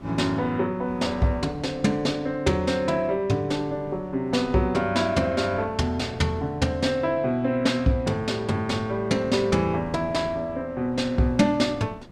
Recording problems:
wind noise; below 400 Hz, SNR 20 dB

